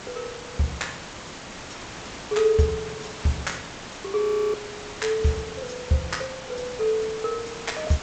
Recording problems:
lossy compression; G.722, log-spectral distance 15 dB, nothing above 7.6 kHz
hiss; slope -3 dB per octave, SNR 10 dB
audio freezing; at 4 s

